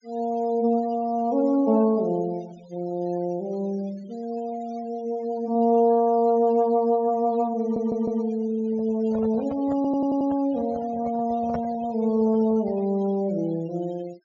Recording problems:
treble missing; nothing above 7 kHz
denoising artefacts; signal-to-artefact ratio 24 dB
audio stuttering; at 7.5 s and at 10 s
handling noise; from 8.5 to 13 s; peak -4 dB vs average level

